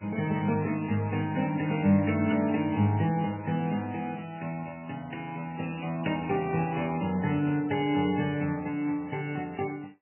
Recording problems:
lossy codec; MP3, log-spectral distance 5 dB, nothing above 2.5 kHz

